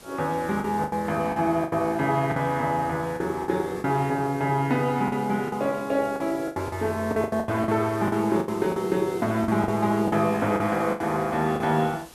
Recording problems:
hiss; slope -3 dB per octave, SNR 21 dB
lost packets; 11% of the sound replaced, filled with the last packet

